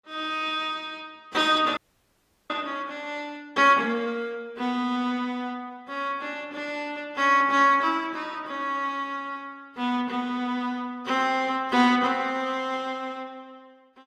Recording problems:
codec artefacts; AAC, log-spectral distance 2 dB, nothing above 14.7 kHz
audio freezing; at 2 s for 0.5 s

